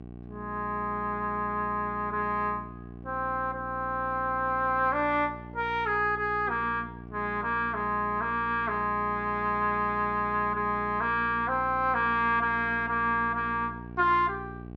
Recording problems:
hum; 60 Hz, harmonics up to 1.1 kHz, SNR 15 dB

